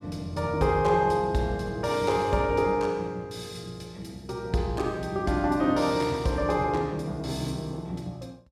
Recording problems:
none

